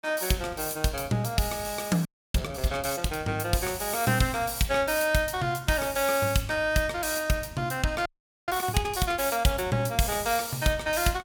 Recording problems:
frozen audio; at 2 s and at 8 s

